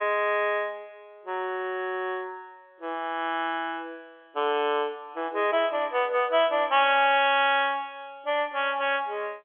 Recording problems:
telephone audio; 340 Hz to 3.4 kHz, G.711

